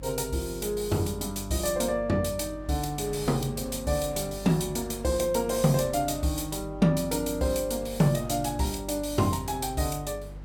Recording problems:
electrical hum; 50 Hz, harmonics up to 450 Hz, SNR 15 dB
wind on the microphone; below 860 Hz, SNR 23 dB

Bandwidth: 17.5 kHz